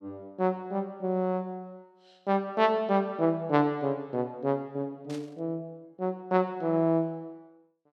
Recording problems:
static burst; at 5 s; peak -13 dB vs average level

